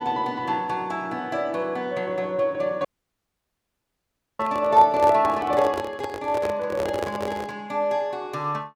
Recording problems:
audio cutting out; at 3 s for 1.5 s
microphone handling noise; from 4.5 to 7.5 s; peak -1 dB vs average level

